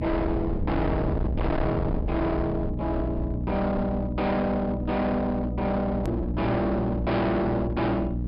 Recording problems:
low-pass filter; nothing above 5.5 kHz
distorted audio; hard clipping, uneven, signal-to-distortion ratio 6 dB
hum; 60 Hz, harmonics up to 300 Hz, SNR 5 dB
rumble; below 180 Hz, SNR 6 dB
edit click; at 6 s

